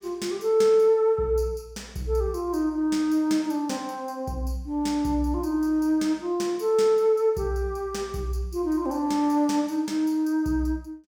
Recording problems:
none

